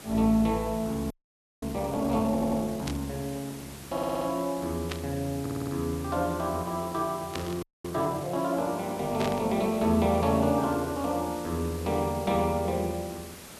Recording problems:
background hiss; slope -3 dB per octave, SNR 15 dB
audio freezing; at 1 s for 0.5 s and at 7.5 s
stutter; at 2.5 s, at 4 s and at 5.5 s
static burst; 4 times, first at 3 s; peak -2 dB vs average level

